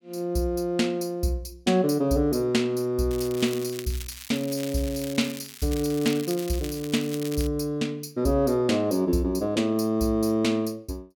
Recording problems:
crackle; from 3 to 7.5 s; loose cable, SNR 14 dB

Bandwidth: 17.5 kHz